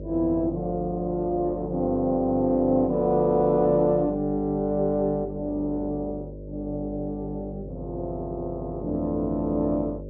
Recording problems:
low-pass filter; nothing above 6.7 kHz
electrical hum; 50 Hz, harmonics up to 600 Hz, SNR 13 dB

